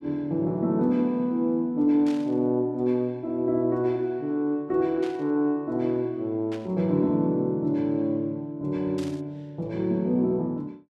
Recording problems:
burst of static; 4 times, first at 2 s; peak -13 dB vs average level

